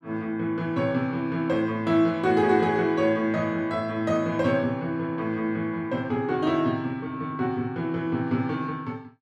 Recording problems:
none

